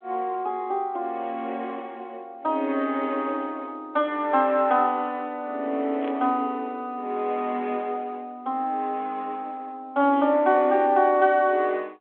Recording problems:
phone line; 220 Hz to 3.5 kHz, G.726
burst of static; at 6 s; peak -17 dB vs average level

